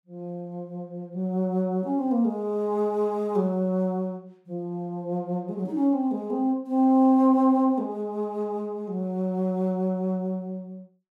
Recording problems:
none

